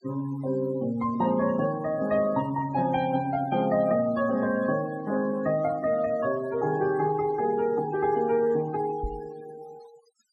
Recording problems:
noise reduction artefacts; signal-to-artefact ratio 19 dB
microphone bump; at 9 s; peak -4 dB vs average level

